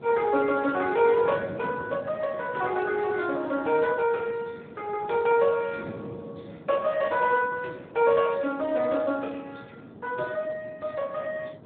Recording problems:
telephone audio; 260 Hz to 2.8 kHz, Speex
wind noise; below 460 Hz, SNR 18 dB

